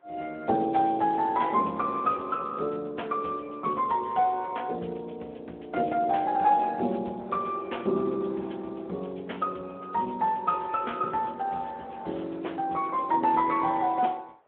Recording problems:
phone line; 260 Hz to 3.5 kHz, Speex
wind on the microphone; below 1.2 kHz, SNR 23 dB

